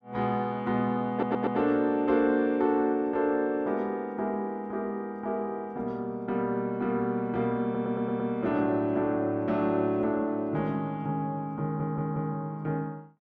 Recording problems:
stutter; at 1 s, at 7.5 s and at 12 s

